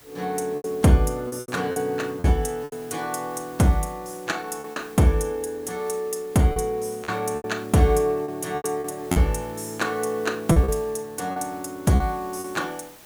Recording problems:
hiss; slope -2 dB per octave, SNR 23 dB
lost packets; 8% of the sound replaced, filled with repeated pitch periods

